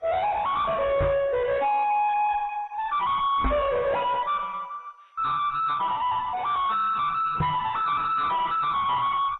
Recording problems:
lossy codec; AAC, then MP2, log-spectral distance 3 dB, nothing above 3.4 kHz
distortion; soft clipping, signal-to-distortion ratio 6 dB
microphone thump; at 1 s, at 3.5 s and at 7.5 s; peak +5 dB vs average level

